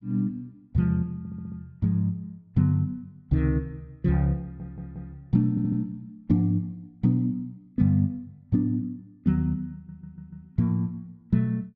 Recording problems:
stutter; 4 times, first at 1 s

